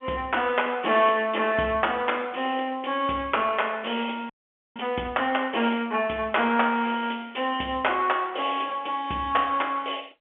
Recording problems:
phone line; 170 Hz to 3.4 kHz, G.711
audio freezing; at 4.5 s

